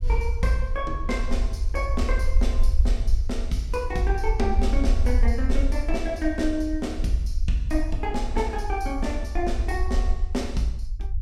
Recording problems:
rumble; below 60 Hz, SNR -1 dB

